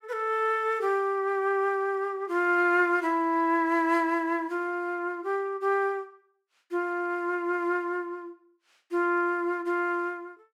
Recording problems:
none

